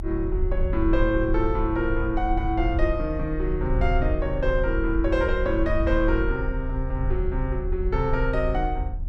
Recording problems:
rumble; below 58 Hz, strongest tone 32 Hz, SNR 3 dB

